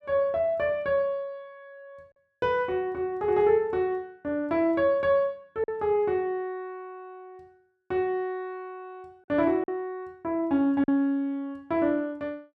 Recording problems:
packet loss; 1.1% of the sound replaced, filled with silence

